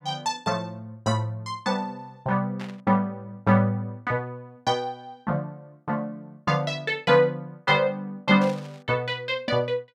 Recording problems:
burst of static; at 2.5 s and at 8.5 s; peak -10 dB vs average level

